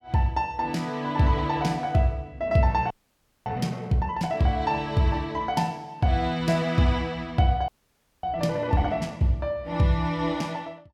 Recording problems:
audio freezing; at 3 s for 0.5 s and at 7.5 s for 0.5 s

